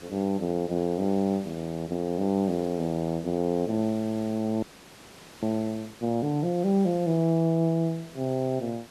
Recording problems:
background hiss; slope -3 dB per octave, SNR 20 dB
audio freezing; at 4.5 s for 1 s

